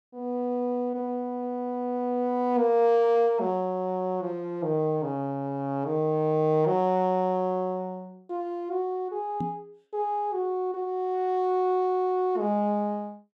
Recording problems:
microphone bump; at 9.5 s; peak -2 dB vs average level

